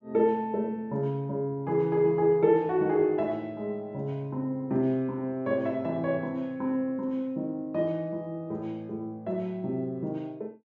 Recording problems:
treble missing; nothing above 7.4 kHz

